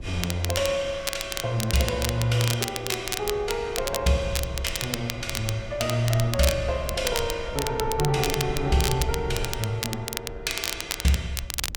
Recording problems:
wind noise; below 96 Hz, SNR 13 dB
crackling; vinyl, SNR 5 dB

